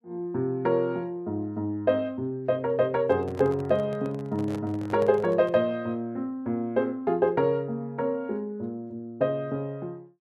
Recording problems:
handling noise; from 3 to 5.5 s; peak -7 dB vs average level

